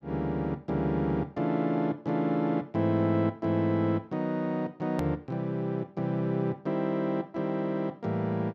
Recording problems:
hard cut with a click; at 5 s

